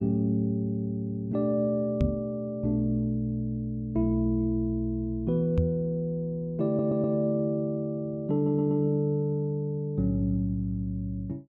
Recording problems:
microphone bump; at 2 s and at 5.5 s; peak +5 dB vs average level
audio stuttering; at 6.5 s and at 8.5 s

